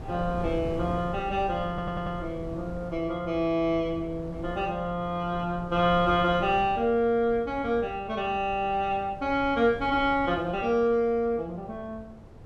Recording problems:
wind noise; below 300 Hz, SNR 15 dB
stutter; at 1.5 s

